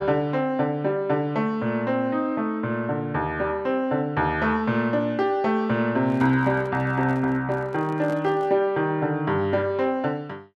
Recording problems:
handling noise; from 6 to 8.5 s; peak -10 dB vs average level

